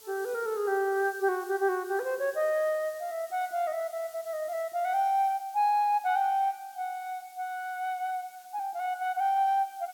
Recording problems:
hiss; SNR 22 dB

